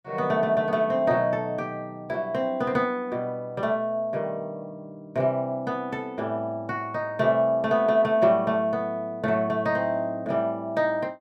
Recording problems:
none

